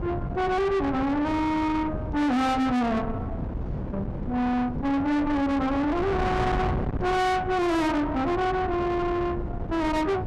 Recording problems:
distortion; soft clipping, signal-to-distortion ratio 6 dB
wind on the microphone; below 690 Hz, SNR 6 dB

